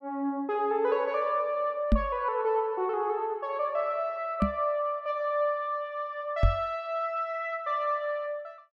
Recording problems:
knock on the microphone; at 2 s, at 4.5 s and at 6.5 s; peak +8 dB vs average level

